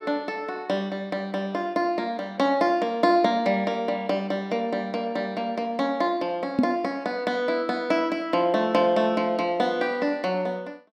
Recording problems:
microphone thump; at 6.5 s; peak +7 dB vs average level

